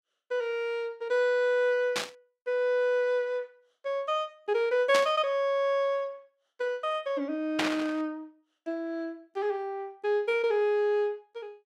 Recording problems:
static burst; at 2 s, at 5 s and at 7.5 s; peak +4 dB vs average level

